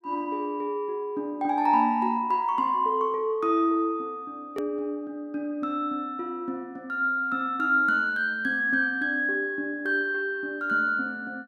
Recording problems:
edit click; at 4.5 s

